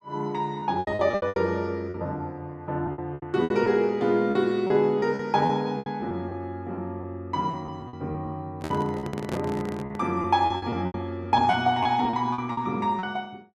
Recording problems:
packet loss; 13% of the sound replaced, filled with repeated pitch periods
handling noise; from 8.5 to 10 s; peak -2 dB vs average level

